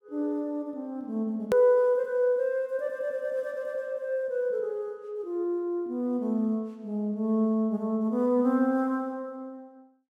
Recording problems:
hard cut with a click; at 1.5 s

